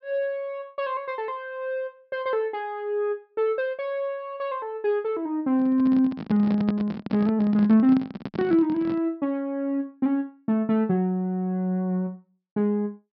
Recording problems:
treble cut off; nothing above 5.5 kHz
microphone handling noise; from 5.5 to 9 s; peak +1 dB vs average level

